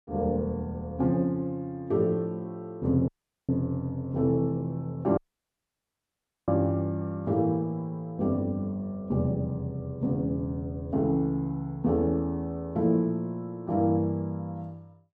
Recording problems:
audio cutting out; at 3 s and at 5 s for 1.5 s

